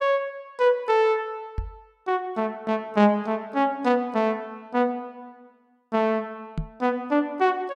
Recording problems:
microphone thump; at 1.5 s and at 6.5 s; peak -1 dB vs average level

